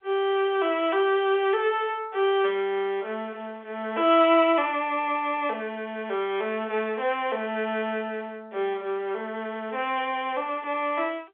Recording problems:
phone line; 340 Hz to 3.6 kHz, G.711

